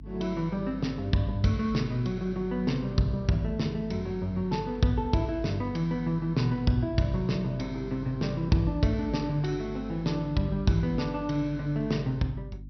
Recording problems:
treble cut off; nothing above 5.9 kHz
hum; 50 Hz, harmonics up to 300 Hz, SNR 15 dB

